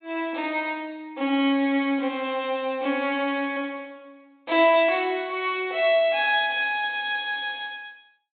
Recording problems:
treble missing; nothing above 4 kHz

